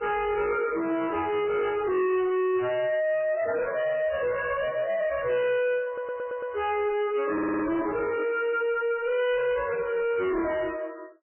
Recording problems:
lossy codec; AAC, then MP3, log-spectral distance 3 dB, nothing above 3 kHz
distorted audio; soft clipping, signal-to-distortion ratio 8 dB
stutter; at 6 s and at 7.5 s

